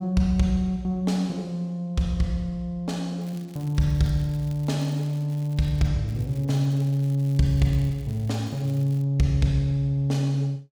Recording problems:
crackling; from 3 to 6 s and from 6 to 9 s; loose cable, SNR 26 dB

